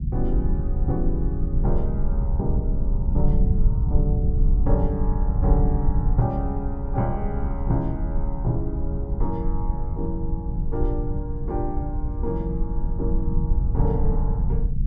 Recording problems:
low-frequency rumble; below 70 Hz, SNR -4 dB

